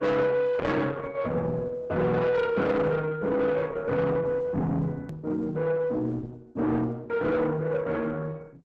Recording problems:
codec artefacts; Opus, log-spectral distance 2 dB
distorted audio; soft clipping, signal-to-distortion ratio 10 dB
edit click; at 5 s

